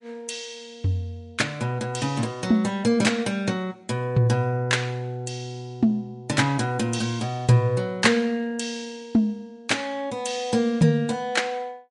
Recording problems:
lossy compression; MP3, log-spectral distance 2 dB, nothing above 11 kHz

